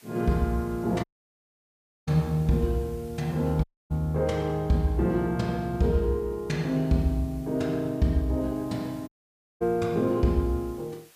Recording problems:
background hiss; slope 0 dB per octave, SNR 28 dB
audio cutting out; at 1 s for 1 s, at 3.5 s and at 9 s for 0.5 s

